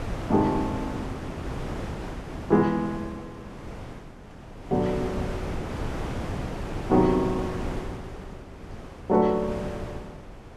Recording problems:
wind noise; below 620 Hz, SNR 9 dB

